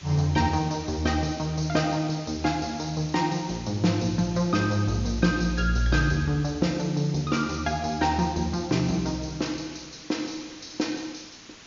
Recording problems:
low-pass filter; nothing above 6.9 kHz
hiss; SNR 19 dB

